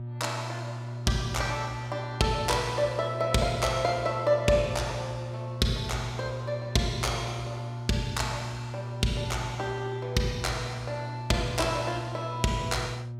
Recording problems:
electrical hum; 60 Hz, harmonics up to 600 Hz, SNR 7 dB

